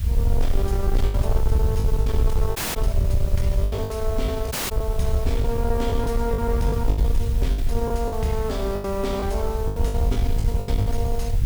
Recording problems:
distorted audio; soft clipping, signal-to-distortion ratio 10 dB
hiss; slope -1 dB per octave, SNR 15 dB
low-frequency rumble; below 76 Hz, SNR -3 dB
lost packets; 11% of the sound replaced, filled with the last packet
dropout; at 2.5 s and at 4.5 s

